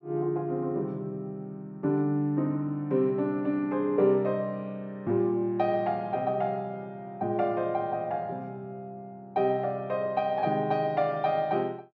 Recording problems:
none

